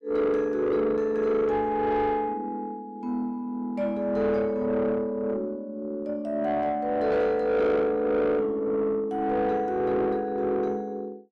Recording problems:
distortion; soft clipping, signal-to-distortion ratio 10 dB

